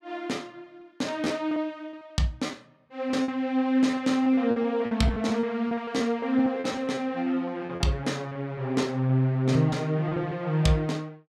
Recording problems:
packet loss; 10% of the sound replaced, filled with repeated pitch periods

